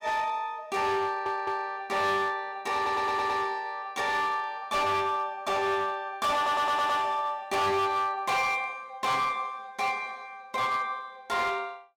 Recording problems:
distorted audio; hard clipping, signal-to-distortion ratio 10 dB
audio stuttering; at 1 s, at 3 s and at 6.5 s

